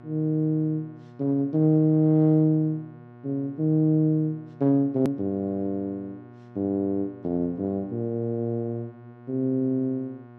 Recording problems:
hum; 60 Hz, harmonics up to 1.8 kHz, SNR 22 dB
click at an edit; at 5 s

